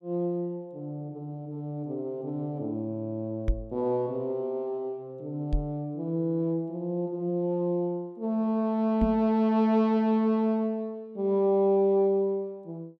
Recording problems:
microphone thump; at 3.5 s, at 5.5 s and at 9 s; peak +4 dB vs average level

